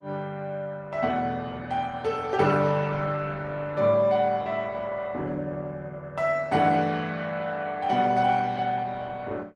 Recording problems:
lossy codec; Opus, log-spectral distance 3 dB

